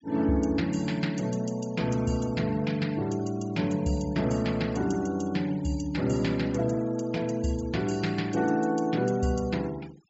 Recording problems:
treble missing; nothing above 8 kHz
noise reduction artefacts; signal-to-artefact ratio 21 dB

